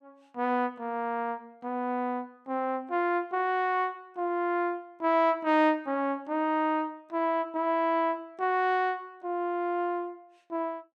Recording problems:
none

